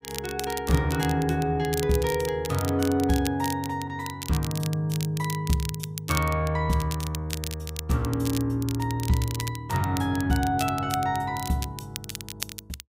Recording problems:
crackle; vinyl, SNR 11 dB

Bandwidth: 15.5 kHz